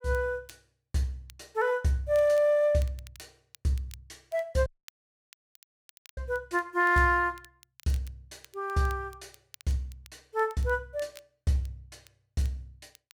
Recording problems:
crackling; vinyl, SNR 27 dB
dropout; at 4.5 s for 1.5 s

